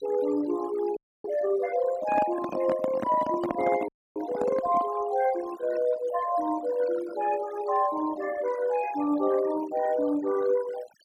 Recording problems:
denoising artefacts; signal-to-artefact ratio 14 dB
frozen audio; at 1 s and at 4 s
handling noise; from 2 to 5 s; peak 0 dB vs average level

